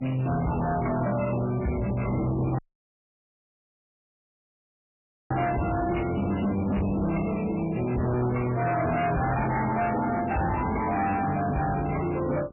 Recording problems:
codec artefacts; MP3, log-spectral distance 8 dB, nothing above 2.7 kHz
distortion; soft clipping, signal-to-distortion ratio 6 dB
hum; 50 Hz, harmonics up to 950 Hz, SNR 23 dB
dropout; at 2.5 s for 2.5 s

